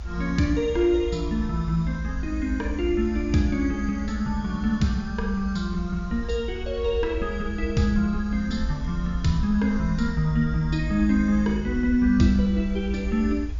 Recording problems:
low-pass filter; nothing above 7.2 kHz
hiss; slope -3 dB per octave, SNR 27 dB
low-frequency rumble; below 70 Hz, SNR 8 dB

